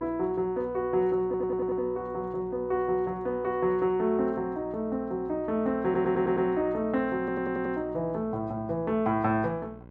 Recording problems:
hum; 60 Hz, harmonics up to 1.1 kHz, SNR 21 dB
stutter; at 1.5 s, at 6 s and at 7 s

